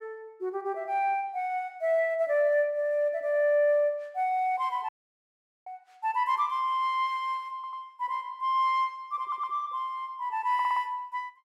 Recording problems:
audio cutting out; at 5 s for 1 s
stutter; at 7.5 s, at 9 s and at 11 s

